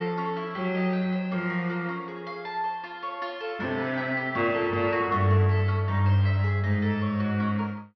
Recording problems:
treble missing; nothing above 5.9 kHz

